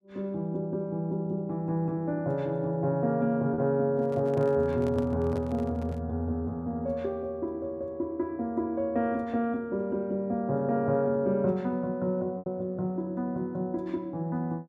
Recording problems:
lost packets; 0.8% of the sound replaced, filled with repeated pitch periods
microphone handling noise; from 4 to 6 s; peak -8 dB vs average level

